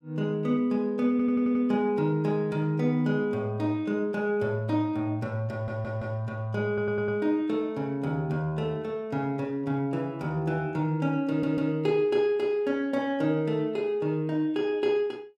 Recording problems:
audio stuttering; 4 times, first at 1 s

